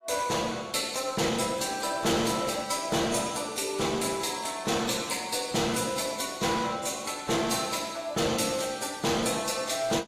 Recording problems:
codec artefacts; AAC, log-spectral distance 5 dB, nothing above 14.7 kHz
distorted audio; hard clipping, uneven, signal-to-distortion ratio 10 dB

